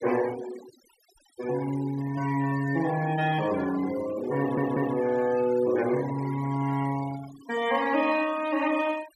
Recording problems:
noise reduction artefacts; signal-to-artefact ratio 15 dB
stutter; at 4.5 s

